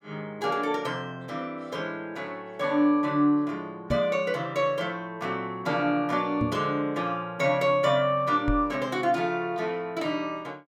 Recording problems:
knock on the microphone; at 4 s, at 6.5 s and at 8.5 s; peak +1 dB vs average level

